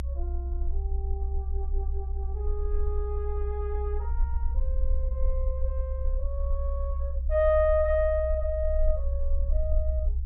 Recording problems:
rumble; below 64 Hz, SNR 0 dB

